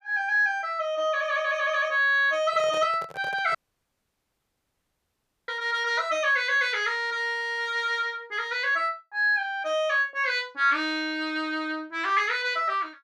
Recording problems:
microphone handling noise; from 2.5 to 3.5 s; peak -11 dB vs average level
dropout; at 3.5 s for 2 s

